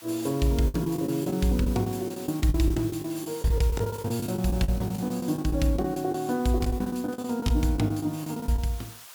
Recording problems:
background hiss; SNR 17 dB
lost packets; 16% of the sound replaced, filled with the last packet

